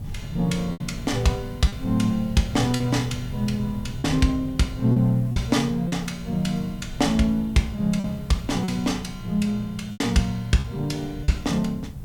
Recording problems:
hiss; slope -4 dB per octave, SNR 28 dB
wind noise; below 150 Hz, SNR 13 dB
packet loss; 5% of the sound replaced, filled with repeated pitch periods

